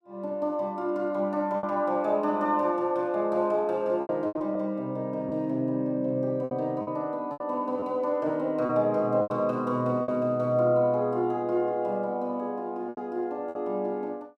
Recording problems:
lost packets; 6% of the sound replaced, filled with repeated pitch periods

